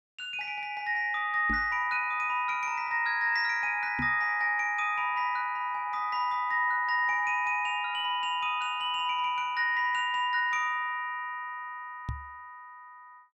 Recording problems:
microphone bump; at 1.5 s, at 4 s and at 12 s; peak -4 dB vs average level

